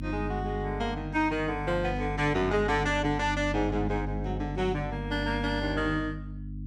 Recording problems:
hum; 50 Hz, harmonics up to 300 Hz, SNR 6 dB

